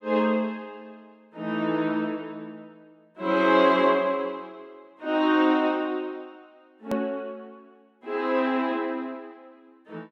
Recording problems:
hard cut with a click; at 7 s

